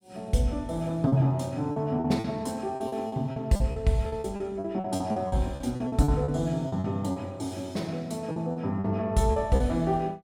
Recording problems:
packet loss; 12% of the sound replaced, filled with repeated pitch periods

